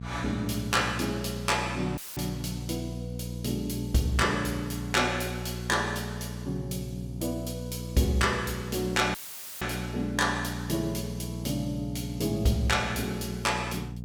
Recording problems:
hum; 60 Hz, harmonics up to 480 Hz, SNR 7 dB
audio cutting out; at 2 s and at 9 s; filled with static

